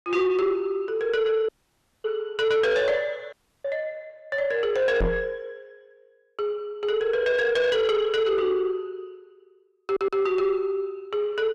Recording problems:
distorted audio; soft clipping, signal-to-distortion ratio 11 dB
audio cutting out; at 1.5 s for 0.5 s and at 3.5 s
knock on the microphone; at 5 s; peak +3 dB vs average level
audio stuttering; at 10 s

